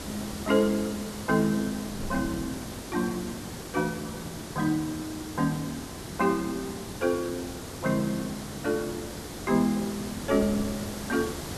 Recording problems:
background hiss; SNR 9 dB
wind on the microphone; below 210 Hz, SNR 17 dB

